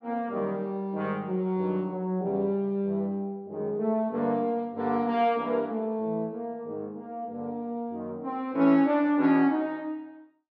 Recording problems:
none

